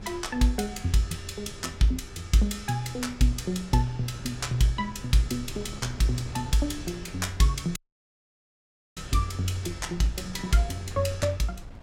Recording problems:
wind on the microphone; below 180 Hz, SNR 15 dB
dropout; at 8 s for 1 s

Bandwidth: 16.5 kHz